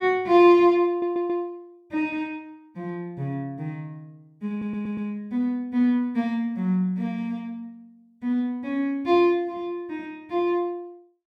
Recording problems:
audio stuttering; at 1 s and at 4.5 s

